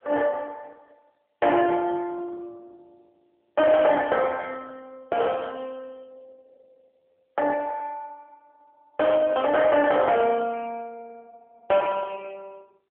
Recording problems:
telephone audio; 300 Hz to 3.1 kHz, AMR-NB
distorted audio; soft clipping, signal-to-distortion ratio 11 dB

